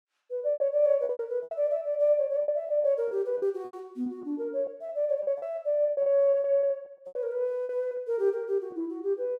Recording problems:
packet loss; 13% of the sound replaced, filled with repeated pitch periods

